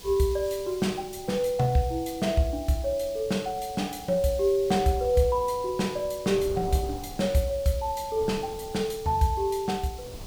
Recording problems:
background hiss; SNR 19 dB
wind noise; below 310 Hz, SNR 19 dB

